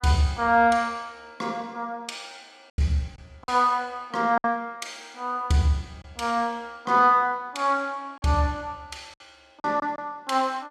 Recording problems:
packet loss; 3% of the sound replaced, filled with silence

